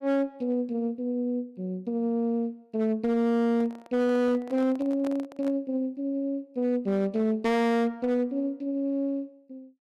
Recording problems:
distorted audio; hard clipping, signal-to-distortion ratio 10 dB
handling noise; from 3.5 to 5.5 s; peak -9 dB vs average level

